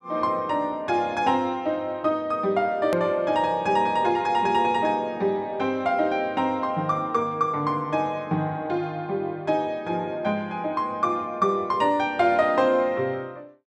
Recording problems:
click at an edit; at 3 s

